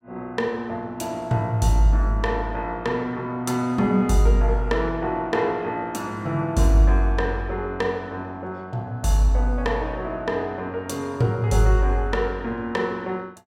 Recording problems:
none

